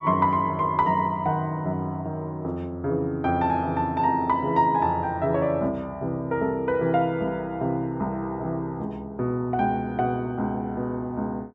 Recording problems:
none

